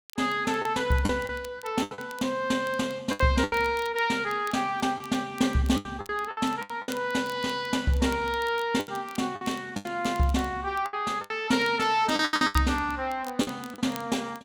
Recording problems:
crackling; vinyl, SNR 21 dB
packet loss; 10% of the sound replaced, filled with the last packet

